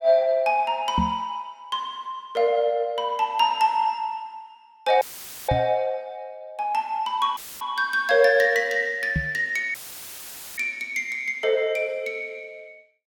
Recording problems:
microphone thump; at 1 s, at 5.5 s and at 9 s; peak +2 dB vs average level
audio cutting out; at 5 s, at 7.5 s and at 9.5 s for 1 s; filled with static

